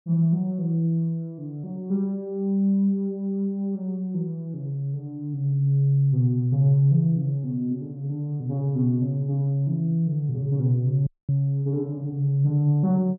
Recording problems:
audio cutting out; at 11 s

